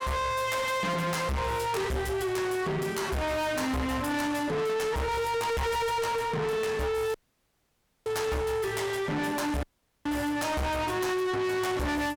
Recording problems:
distorted audio; soft clipping, signal-to-distortion ratio 6 dB
dropout; at 7 s for 1 s and at 9.5 s

